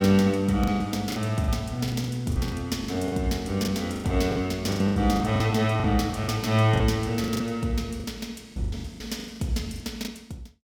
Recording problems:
lost packets; 14% of the sound replaced, filled with the last packet

